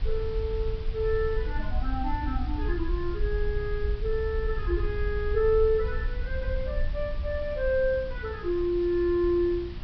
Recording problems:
low-pass filter; nothing above 5.5 kHz
electrical hum; 60 Hz, harmonics up to 600 Hz, SNR 20 dB
background hiss; SNR 20 dB
wind noise; below 64 Hz, SNR 5 dB

